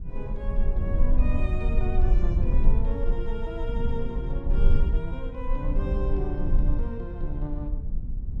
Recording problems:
low-frequency rumble; below 50 Hz, strongest tone 20 Hz, SNR -7 dB

